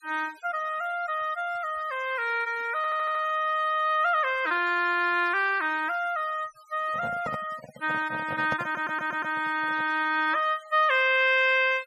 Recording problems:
noise reduction artefacts; signal-to-artefact ratio 23 dB
audio stuttering; at 3 s and at 8.5 s
handling noise; from 7 to 10 s; peak -4 dB vs average level

